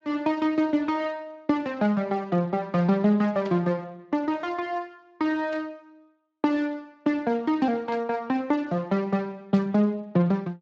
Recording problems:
codec artefacts; Speex, log-spectral distance 2 dB
burst of static; 4 times, first at 3.5 s; peak -13 dB vs average level

